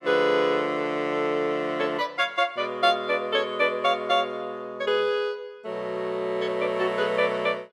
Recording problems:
none

